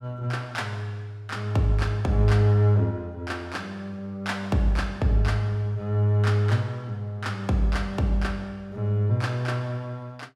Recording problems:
none

